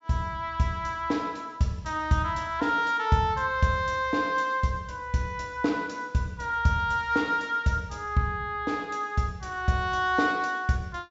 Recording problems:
treble cut off; nothing above 8 kHz

